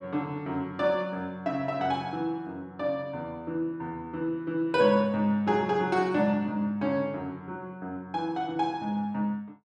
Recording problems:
none

